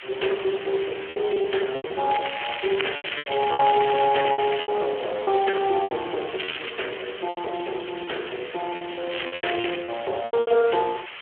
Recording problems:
phone line; 320 Hz to 3.3 kHz, Speex
distortion; hard clipping, signal-to-distortion ratio 15 dB
background hiss; SNR 11 dB
lost packets; 12% of the sound replaced, filled with repeated pitch periods
crackling; from 2 to 4.5 s, at 6.5 s and at 9 s; loose cable, SNR 5 dB

